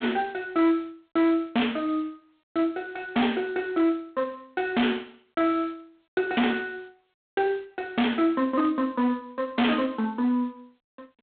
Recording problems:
phone line; 240 Hz to 3.4 kHz, G.726
distortion; hard clipping, signal-to-distortion ratio 6 dB

